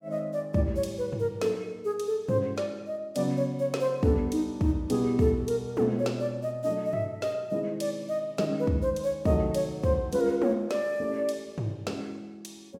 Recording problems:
none

